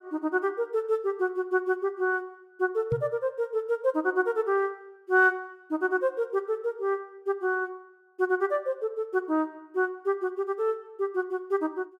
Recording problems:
knock on the microphone; at 3 s; peak 0 dB vs average level

